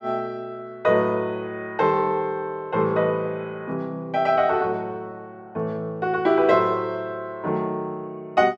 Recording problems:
none

